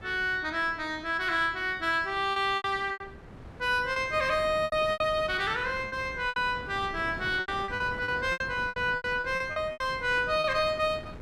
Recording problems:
wind on the microphone; below 590 Hz, SNR 17 dB
packet loss; 11% of the sound replaced, filled with repeated pitch periods

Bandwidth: 13 kHz